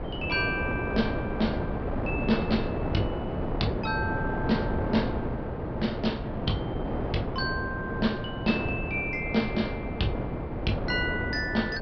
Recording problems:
treble cut off; nothing above 5.5 kHz
hum; 60 Hz, harmonics up to 600 Hz, SNR 20 dB
wind noise; below 560 Hz, SNR 1 dB

